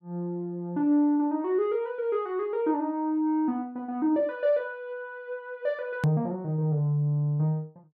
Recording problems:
edit click; at 6 s

